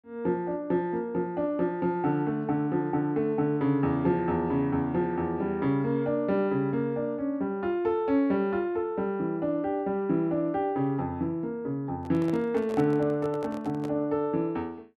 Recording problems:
handling noise; from 12 to 14 s; peak -7 dB vs average level

